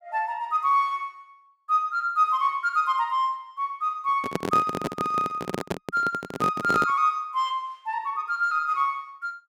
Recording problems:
handling noise; from 4 to 7 s; peak +2 dB vs average level

